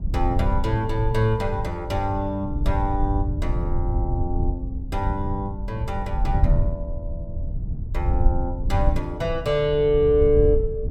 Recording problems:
rumble; below 84 Hz, SNR 2 dB

